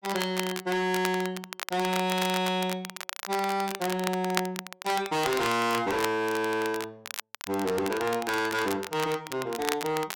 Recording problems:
distortion; hard clipping, signal-to-distortion ratio 7 dB
crackling; vinyl, SNR 8 dB

